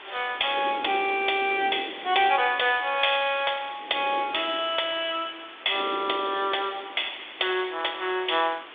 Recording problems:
telephone audio; 280 Hz to 3.6 kHz, G.726
hiss; SNR 17 dB
wind on the microphone; below 540 Hz, SNR 17 dB

